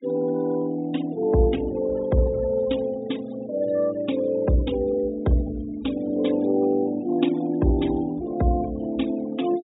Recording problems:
low-pass filter; nothing above 4 kHz
noise reduction artefacts; signal-to-artefact ratio 19 dB

